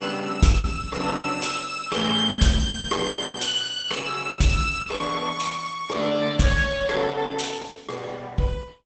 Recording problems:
lossy compression; Opus, log-spectral distance 5 dB, nothing above 8.2 kHz
lost packets; 9% of the sound replaced, filled with the last packet

